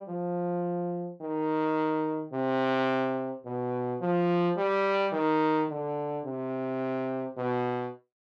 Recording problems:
none

